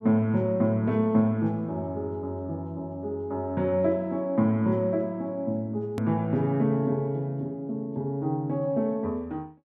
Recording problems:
hard cut with a click; at 6 s

